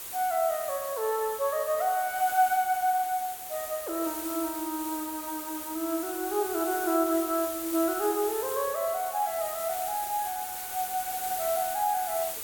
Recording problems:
background hiss; slope -1 dB per octave, SNR 6 dB

